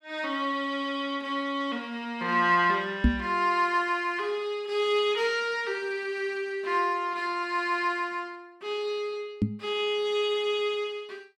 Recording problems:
knock on the microphone; at 3 s and at 9.5 s; peak +8 dB vs average level

